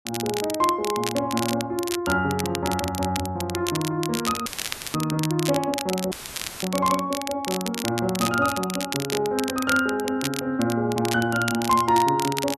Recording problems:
crackling; vinyl, SNR 7 dB
audio cutting out; at 4.5 s and at 6 s for 0.5 s; filled with static

